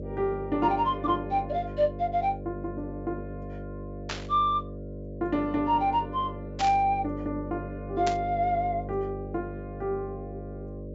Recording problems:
treble cut off; nothing above 8 kHz
electrical hum; 50 Hz, harmonics up to 600 Hz, SNR 10 dB
burst of static; at 4 s, at 6.5 s and at 8 s; peak -1 dB vs average level

